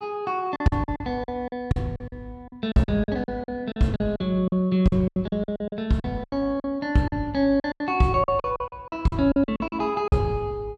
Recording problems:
packet loss; 17% of the sound replaced, filled with silence

